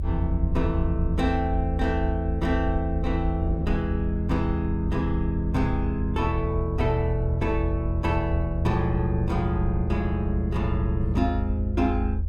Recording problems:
rumble; below 80 Hz, SNR 2 dB
wind noise; below 410 Hz, SNR 21 dB

